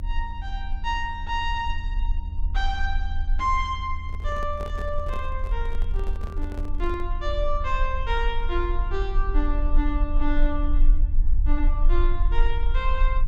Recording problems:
hum; 50 Hz, harmonics up to 900 Hz, SNR 18 dB
rumble; below 42 Hz, strongest tone 24 Hz, SNR -2 dB
microphone handling noise; from 4 to 7 s; peak -6 dB vs average level

